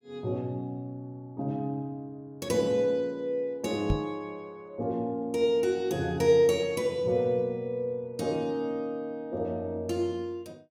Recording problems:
microphone thump; at 4 s; peak +5 dB vs average level

